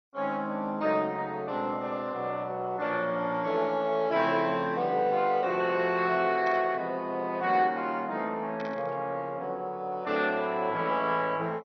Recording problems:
lossy compression; MP2, log-spectral distance 3 dB, nothing above 4.9 kHz
static burst; at 6.5 s and at 8.5 s; peak -10 dB vs average level

